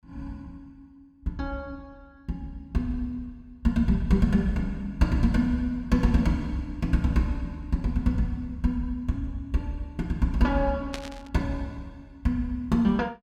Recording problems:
burst of static; at 11 s; peak -3 dB vs average level

